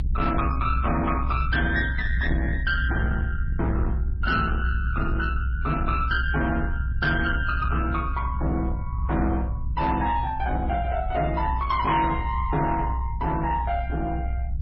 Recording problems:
lossy compression; MP3, log-spectral distance 2 dB, nothing above 5.3 kHz
distortion; soft clipping, signal-to-distortion ratio 12 dB
low-frequency rumble; below 78 Hz, strongest tone 62 Hz, SNR 2 dB

